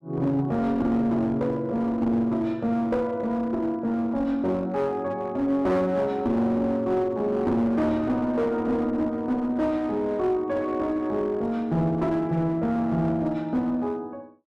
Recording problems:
distortion; hard clipping, uneven, signal-to-distortion ratio 11 dB

